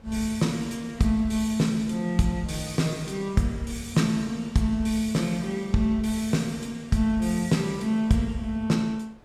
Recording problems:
wind noise; below 760 Hz, SNR 27 dB

